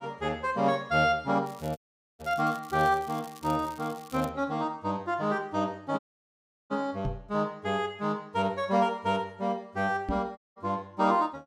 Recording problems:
crackling; from 1.5 to 4.5 s; loose cable, SNR 21 dB
dropout; at 2 s, at 6 s for 0.5 s and at 10 s
microphone thump; at 7 s and at 10 s; peak 0 dB vs average level

